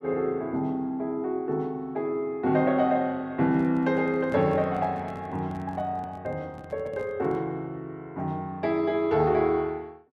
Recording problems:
handling noise; from 3.5 to 7.5 s; peak -8 dB vs average level

